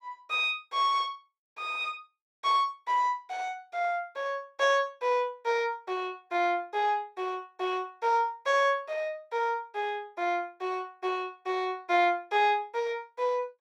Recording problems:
none

